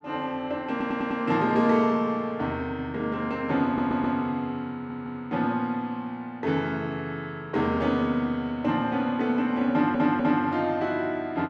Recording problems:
stutter; 4 times, first at 0.5 s

